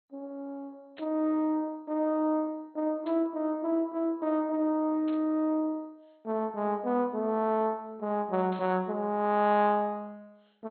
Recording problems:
codec artefacts; MP2, log-spectral distance 2 dB, nothing above 3.6 kHz
burst of static; 4 times, first at 1 s; peak -15 dB vs average level

